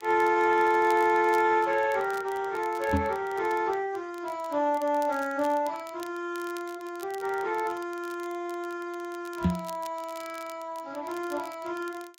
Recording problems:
lossy compression; Speex, then Vorbis, log-spectral distance 3 dB
crackling; vinyl, SNR 23 dB
microphone bump; at 3 s and at 9.5 s; peak +6 dB vs average level

